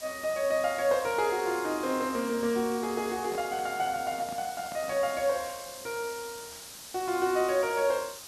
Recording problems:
background hiss; SNR 13 dB
microphone handling noise; from 3 to 5 s; peak -10 dB vs average level

